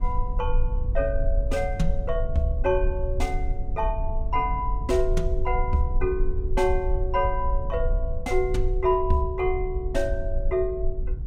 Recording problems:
low-frequency rumble; below 54 Hz, SNR 2 dB

